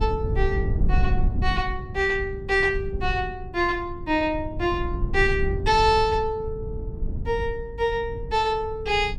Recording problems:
low-frequency rumble; below 90 Hz, SNR 6 dB

